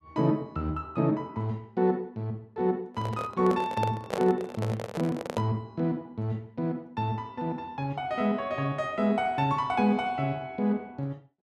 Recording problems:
handling noise; from 3 to 5.5 s; peak +2 dB vs average level

